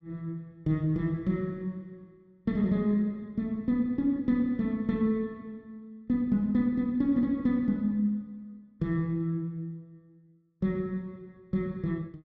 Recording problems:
none

